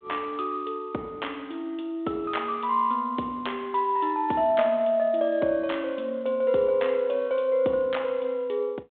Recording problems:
phone line; 260 Hz to 3.5 kHz, G.726

